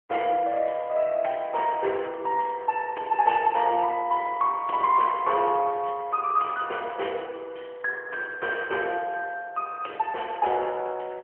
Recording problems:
telephone audio; 340 Hz to 3.1 kHz, AMR-NB

